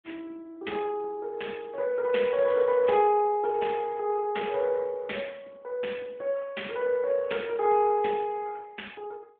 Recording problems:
telephone audio; 240 Hz to 3.5 kHz, AMR-NB

